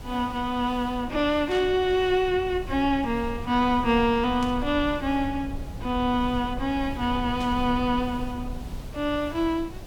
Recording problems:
hiss; slope -4 dB per octave, SNR 23 dB
low-frequency rumble; below 110 Hz, SNR 13 dB
static burst; at 1.5 s, at 4.5 s and at 7.5 s; peak -11 dB vs average level

